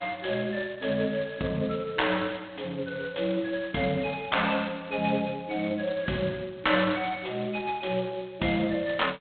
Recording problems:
telephone audio; 150 Hz to 4 kHz, G.726

